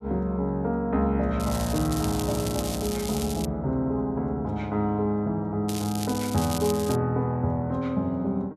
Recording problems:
crackling; from 1.5 to 3.5 s and from 5.5 to 7 s; loose cable, SNR 10 dB

